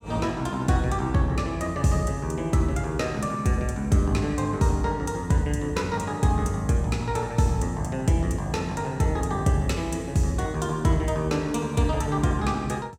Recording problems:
none

